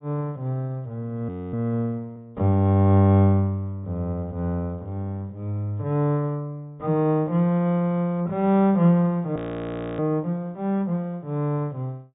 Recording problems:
treble cut off; nothing above 4 kHz
audio freezing; at 1.5 s and at 9.5 s for 0.5 s

